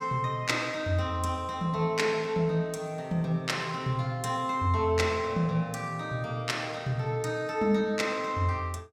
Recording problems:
none

